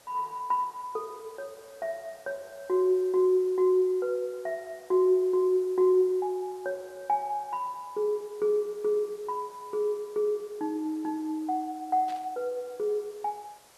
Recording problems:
background hiss; SNR 26 dB
static burst; at 12 s; peak -15 dB vs average level

